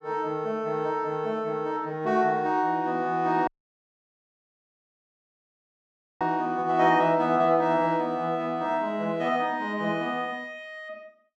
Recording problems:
dropout; at 3.5 s for 2.5 s

